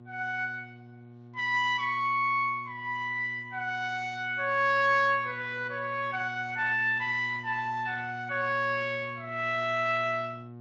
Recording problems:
codec artefacts; Speex, log-spectral distance 3 dB
hum; 60 Hz, harmonics up to 1.1 kHz, SNR 18 dB

